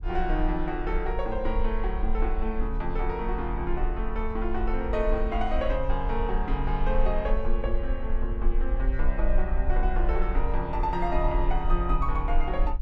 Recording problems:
rumble; below 42 Hz, strongest tone 22 Hz, SNR 0 dB

